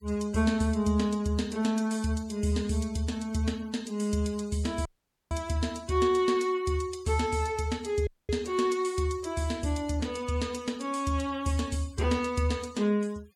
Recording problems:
noise reduction artefacts; signal-to-artefact ratio 22 dB
audio cutting out; at 5 s and at 8 s

